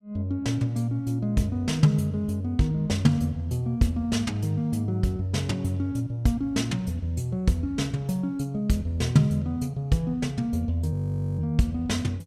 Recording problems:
frozen audio; at 11 s

